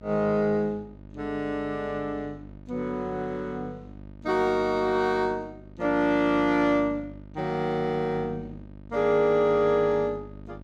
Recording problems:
mains hum; 50 Hz, harmonics up to 950 Hz, SNR 19 dB

